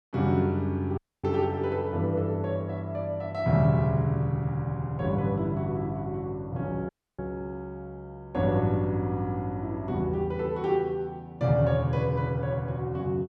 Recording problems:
dropout; at 1 s and at 7 s

